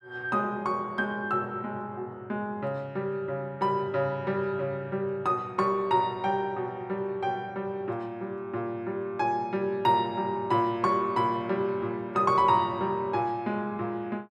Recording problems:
none

